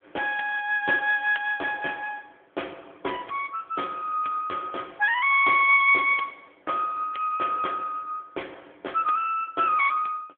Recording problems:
telephone audio; 340 Hz to 3.3 kHz, AMR-NB

